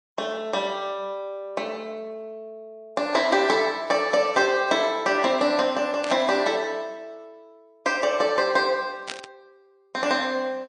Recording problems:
lossy compression; MP3, log-spectral distance 2 dB, nothing above 9.2 kHz
burst of static; at 6 s and at 9 s; peak -3 dB vs average level

